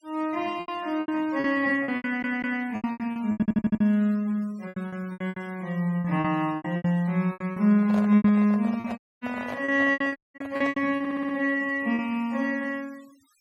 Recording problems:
noise reduction artefacts; signal-to-artefact ratio 27 dB
lost packets; 15% of the sound replaced, filled with repeated pitch periods
stutter; at 2 s, at 3.5 s and at 11 s
microphone handling noise; from 7.5 to 11 s; peak -7 dB vs average level
dropout; at 9 s and at 10 s

